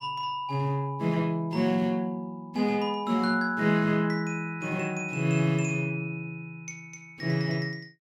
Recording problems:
none

